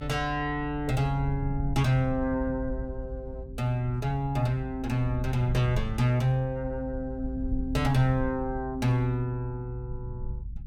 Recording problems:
rumble; below 80 Hz, SNR 9 dB

